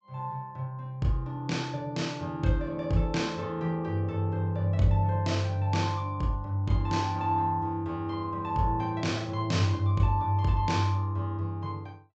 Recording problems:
treble cut off; nothing above 8 kHz

